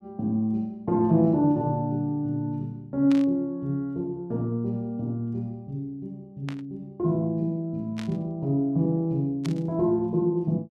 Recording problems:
static burst; 4 times, first at 3 s; peak -8 dB vs average level

